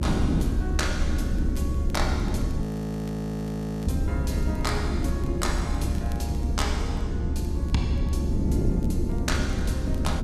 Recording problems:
rumble; below 72 Hz, SNR -3 dB
wind noise; below 290 Hz, SNR -3 dB
crackle; vinyl, SNR 24 dB
frozen audio; at 2.5 s for 1 s

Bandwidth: 14.5 kHz